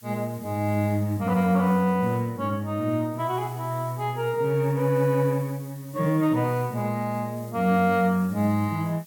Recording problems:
hiss; slope +1 dB per octave, SNR 23 dB

